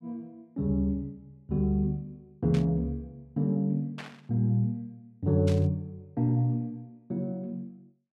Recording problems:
static burst; at 2.5 s, at 4 s and at 5.5 s; peak -7 dB vs average level

